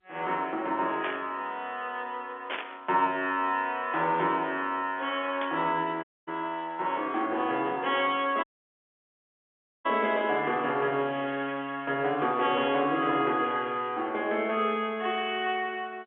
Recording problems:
phone line; 240 Hz to 3.5 kHz, G.711
burst of static; at 1 s, at 2.5 s and at 5.5 s; peak -1 dB vs average level
audio cutting out; at 6 s and at 8.5 s for 1.5 s

